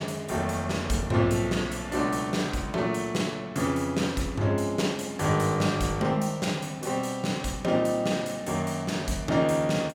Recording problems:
none

